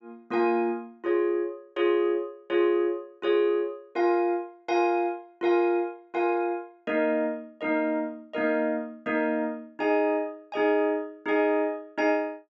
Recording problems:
treble missing; nothing above 7.6 kHz

